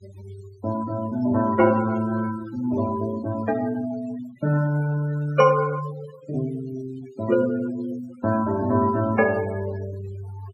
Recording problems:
denoising artefacts; signal-to-artefact ratio 16 dB

